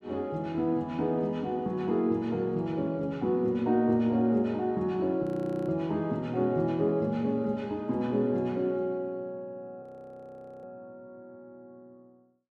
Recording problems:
audio freezing; at 5 s and at 10 s for 1 s

